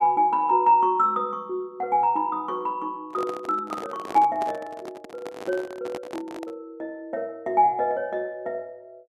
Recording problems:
handling noise; from 3 to 6.5 s; peak -5 dB vs average level

